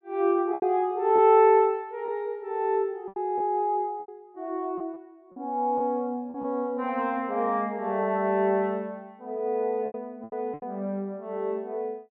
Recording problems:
lost packets; 6% of the sound replaced, filled with repeated pitch periods

